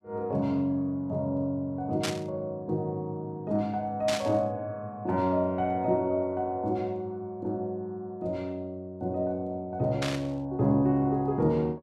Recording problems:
burst of static; at 2 s, at 4 s and at 10 s; peak +2 dB vs average level

